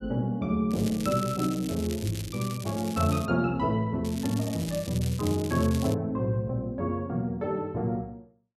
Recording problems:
crackling; from 0.5 to 3.5 s and from 4 to 6 s; loose cable, SNR 13 dB

